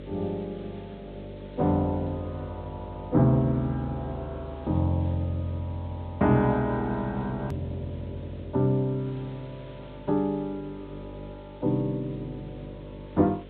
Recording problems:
treble missing; nothing above 4 kHz
mains hum; 50 Hz, harmonics up to 600 Hz, SNR 15 dB
hiss; SNR 27 dB
hard cut with a click; at 7.5 s

